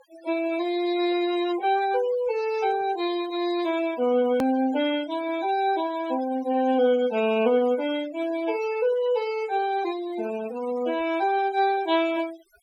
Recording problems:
noise reduction artefacts; signal-to-artefact ratio 16 dB
edit click; at 4.5 s

